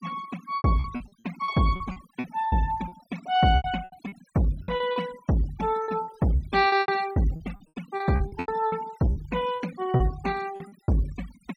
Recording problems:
denoising artefacts; signal-to-artefact ratio 17 dB
packet loss; 15% of the sound replaced, filled with repeated pitch periods

